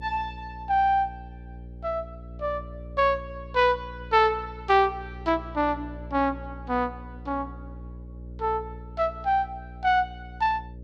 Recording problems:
hum; 60 Hz, harmonics up to 600 Hz, SNR 15 dB

